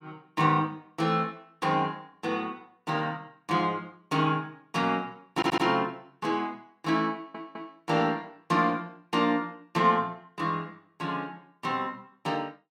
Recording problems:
stutter; at 5.5 s and at 7 s

